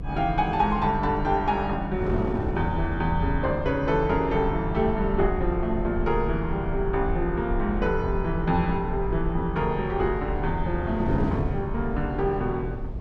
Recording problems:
rumble; below 64 Hz, SNR 8 dB
wind on the microphone; below 320 Hz, SNR 10 dB

